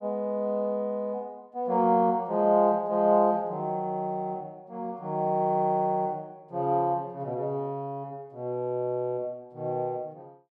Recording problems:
none

